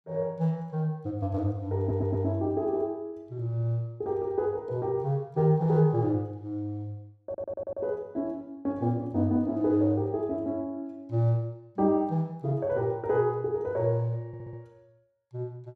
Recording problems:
stutter; at 2 s, at 7.5 s and at 14 s

